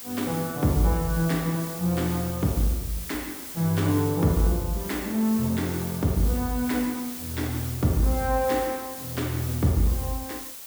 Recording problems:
background hiss; slope 0 dB per octave, SNR 10 dB

